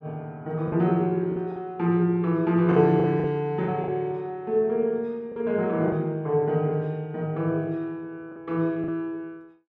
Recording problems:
packet loss; 5% of the sound replaced, filled with the last packet

